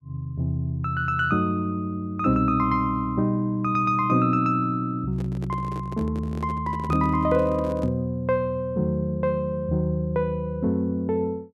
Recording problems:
handling noise; from 5 to 8 s; peak -4 dB vs average level

